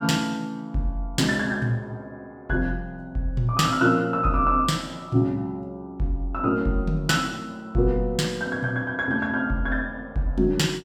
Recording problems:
none

